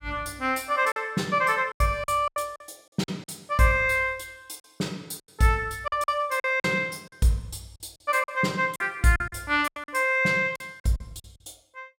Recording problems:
lost packets; 9% of the sound replaced, filled with silence

